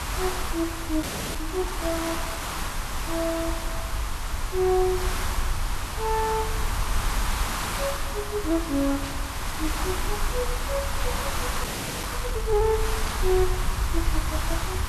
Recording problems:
background hiss; SNR 2 dB
low-frequency rumble; below 62 Hz, SNR 4 dB
audio freezing; at 1 s and at 12 s
static burst; at 9 s, at 11 s and at 13 s; peak -4 dB vs average level

